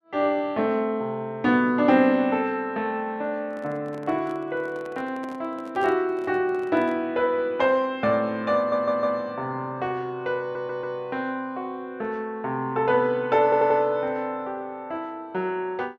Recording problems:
microphone handling noise; from 3.5 to 7 s; peak -11 dB vs average level
stutter; at 8.5 s, at 10 s and at 13 s

